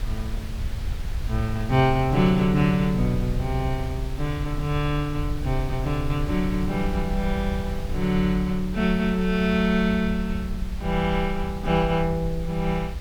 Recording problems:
background hiss; slope -3 dB per octave, SNR 18 dB
wind on the microphone; below 74 Hz, SNR 8 dB

